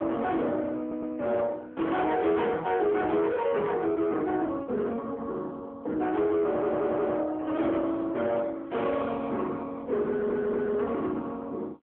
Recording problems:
telephone audio; 240 Hz to 3.4 kHz, AMR-NB
distortion; soft clipping, signal-to-distortion ratio 11 dB
audio stuttering; at 1 s, at 6.5 s and at 10 s

